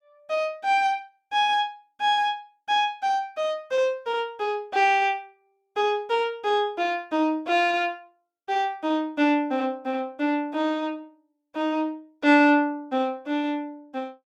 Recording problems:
none

